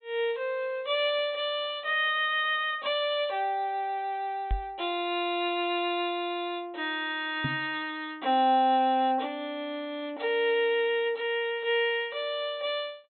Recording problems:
treble cut off; nothing above 3.9 kHz
microphone thump; at 4.5 s and at 7.5 s; peak +1 dB vs average level

